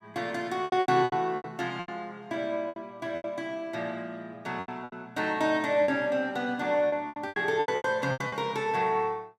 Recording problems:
lost packets; 13% of the sound replaced, filled with repeated pitch periods

